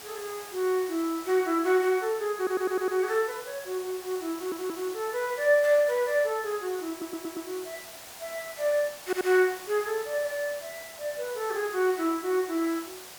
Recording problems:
hiss; SNR 14 dB
stutter; 4 times, first at 2.5 s

